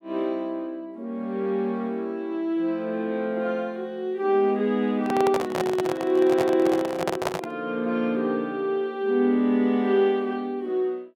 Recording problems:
handling noise; from 5 to 7.5 s; peak +2 dB vs average level

